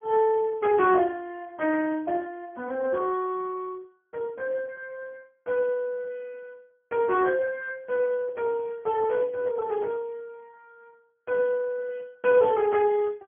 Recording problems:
low-pass filter; nothing above 3.4 kHz
codec artefacts; Speex, log-spectral distance 2 dB

